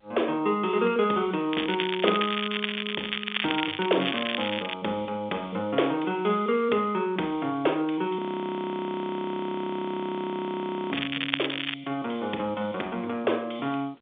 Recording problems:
phone line; 280 Hz to 3.7 kHz, G.711
crackling; from 1.5 to 4.5 s and at 11 s; loose cable, SNR 2 dB
frozen audio; at 8 s for 2.5 s

